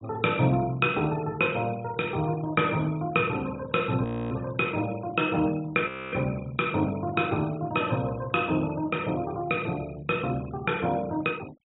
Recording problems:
treble cut off; nothing above 4 kHz
denoising artefacts; signal-to-artefact ratio 22 dB
frozen audio; at 4 s and at 6 s

